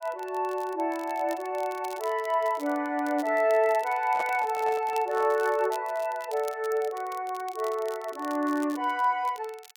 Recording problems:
crackling; vinyl, SNR 21 dB
microphone handling noise; from 4 to 5.5 s; peak -2 dB vs average level

